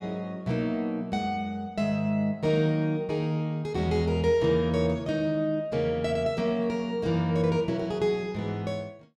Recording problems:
none

